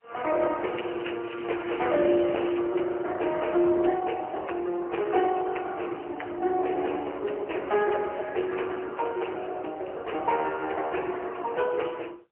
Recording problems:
phone line; 300 Hz to 3.1 kHz, AMR-NB, then MP3
crackle; from 0.5 to 2.5 s; loose cable, SNR 15 dB

